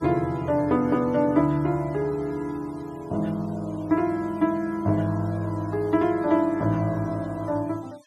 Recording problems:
noise reduction artefacts; signal-to-artefact ratio 28 dB

